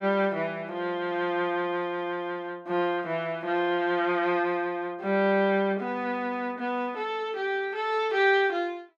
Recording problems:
none

